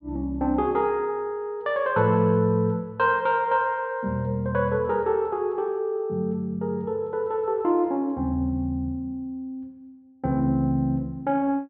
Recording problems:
none

